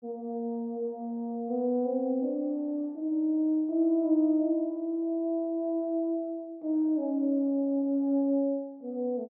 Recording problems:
none

